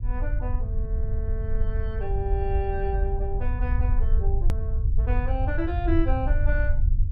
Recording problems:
rumble; below 70 Hz, SNR -6 dB
click at an edit; at 4.5 s

